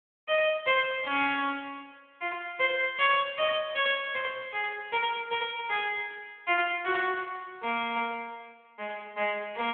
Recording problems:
phone line; 240 Hz to 3.6 kHz, Speex

